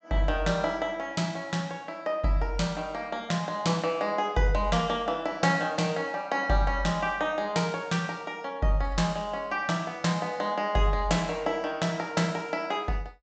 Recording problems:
treble cut off; nothing above 8 kHz

